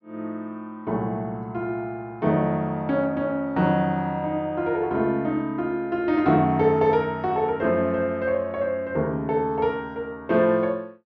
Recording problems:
treble missing; nothing above 6.2 kHz

